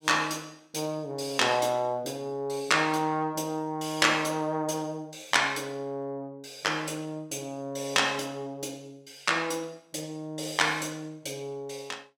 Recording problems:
none

